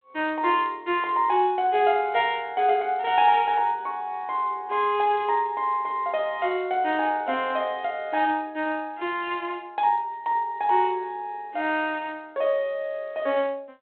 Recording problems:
telephone audio; 260 Hz to 3.7 kHz, G.726

